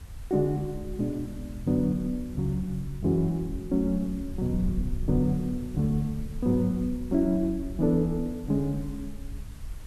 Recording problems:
background hiss; slope -2 dB per octave, SNR 26 dB
wind on the microphone; below 74 Hz, SNR 12 dB

